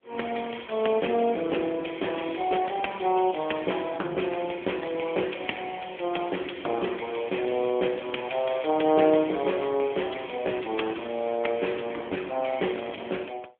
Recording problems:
telephone audio; 220 Hz to 3.4 kHz, AMR-NB

